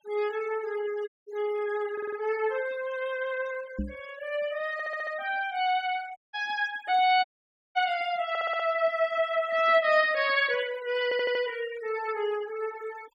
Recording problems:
denoising artefacts; signal-to-artefact ratio 18 dB
dropout; at 1 s, at 6 s and at 7.5 s for 0.5 s
stutter; 4 times, first at 2 s
knock on the microphone; at 4 s; peak 0 dB vs average level

